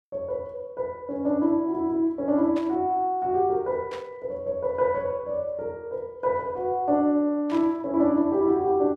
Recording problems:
burst of static; at 2.5 s, at 4 s and at 7.5 s; peak -11 dB vs average level

